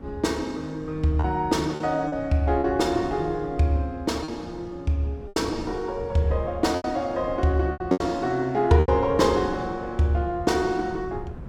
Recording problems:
wind on the microphone; below 220 Hz, SNR 17 dB
lost packets; 5% of the sound replaced, filled with repeated pitch periods

